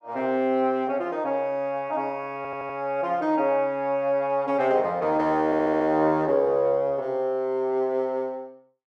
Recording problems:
stutter; at 2.5 s and at 5.5 s

